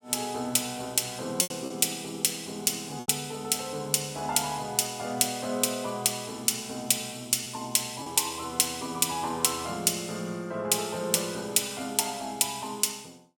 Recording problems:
packet loss; 1.9% of the sound replaced, filled with repeated pitch periods

